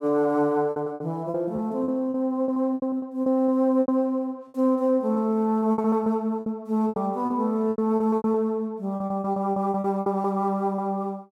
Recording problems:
packet loss; 15% of the sound replaced, filled with repeated pitch periods

